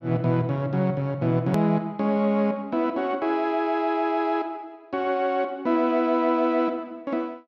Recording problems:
treble missing; nothing above 8 kHz
click at an edit; at 1.5 s

